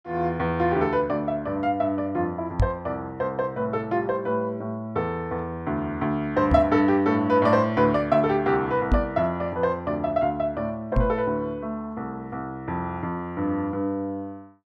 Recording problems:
microphone thump; 4 times, first at 2.5 s; peak +6 dB vs average level

